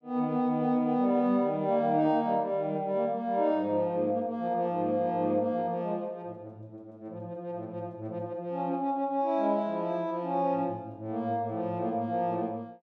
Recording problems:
none

